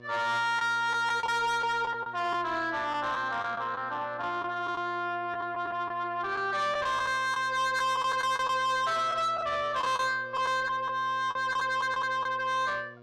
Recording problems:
distorted audio; soft clipping, signal-to-distortion ratio 8 dB
hum; 60 Hz, harmonics up to 2.3 kHz, SNR 23 dB
lost packets; 6% of the sound replaced, filled with the last packet

